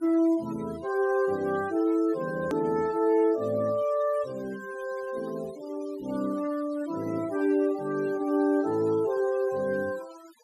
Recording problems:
denoising artefacts; signal-to-artefact ratio 21 dB
click at an edit; at 2.5 s

